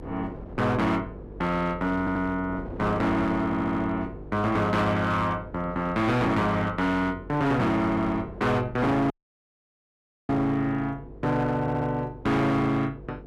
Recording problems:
distorted audio; hard clipping, signal-to-distortion ratio 10 dB
hum; 50 Hz, harmonics up to 500 Hz, SNR 18 dB
wind on the microphone; below 510 Hz, SNR 19 dB
audio stuttering; at 2 s, at 3.5 s and at 12 s
audio cutting out; at 9 s for 1 s

